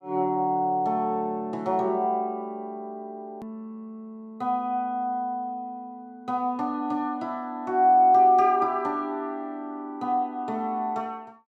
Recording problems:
edit click; at 3.5 s

